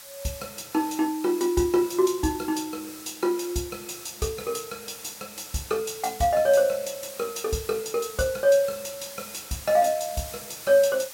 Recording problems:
background hiss; slope +1 dB per octave, SNR 14 dB

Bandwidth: 16.5 kHz